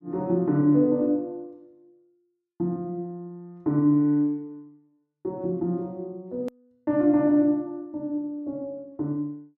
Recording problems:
hard cut with a click; at 6.5 s

